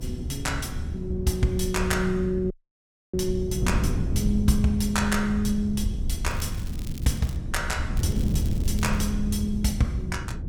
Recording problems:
mains hum; 60 Hz, harmonics up to 720 Hz, SNR 19 dB
low-frequency rumble; below 76 Hz, SNR 8 dB
wind noise; below 170 Hz, SNR 4 dB
dropout; at 2.5 s for 0.5 s
crackle; from 6.5 to 7.5 s and from 8 to 9 s; loose cable, SNR 18 dB

